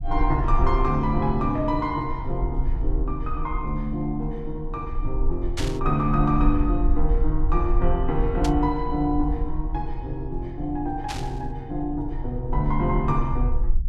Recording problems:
low-frequency rumble; below 48 Hz, SNR 3 dB
burst of static; at 5.5 s, at 8.5 s and at 11 s; peak 0 dB vs average level

